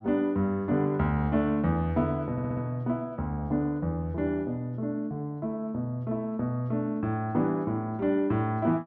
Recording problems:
stutter; at 2.5 s

